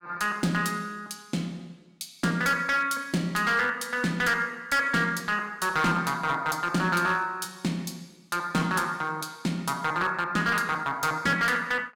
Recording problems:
distortion; hard clipping, uneven, signal-to-distortion ratio 11 dB

